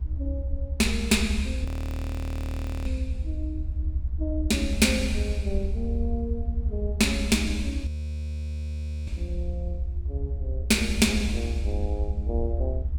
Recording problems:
low-frequency rumble; below 76 Hz, SNR 2 dB
audio freezing; at 1.5 s for 1 s and at 8 s for 1 s

